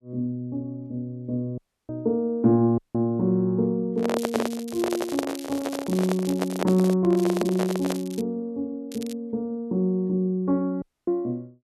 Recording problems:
audio cutting out; at 1.5 s, at 3 s and at 11 s
microphone handling noise; from 4 to 8 s; peak +3 dB vs average level
crackling; from 4 to 7 s, from 7 to 8 s and at 9 s; loose cable, SNR 16 dB

